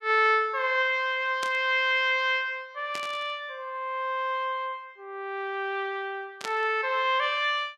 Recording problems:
static burst; at 1.5 s, at 3 s and at 6.5 s; peak -4 dB vs average level

